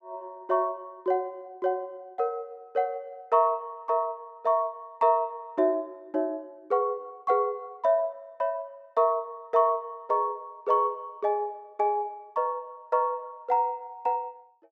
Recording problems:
none

